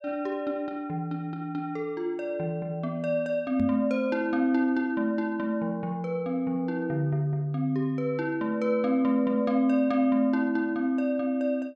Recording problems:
microphone thump; at 3.5 s; peak +2 dB vs average level

